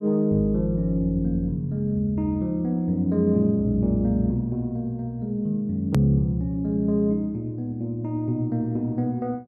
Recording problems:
click at an edit; at 6 s

